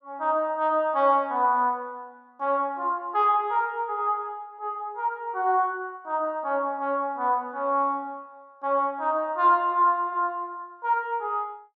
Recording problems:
none

